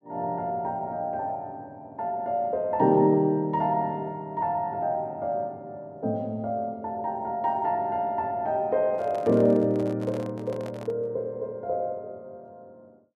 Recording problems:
handling noise; from 9 to 11 s; peak -10 dB vs average level

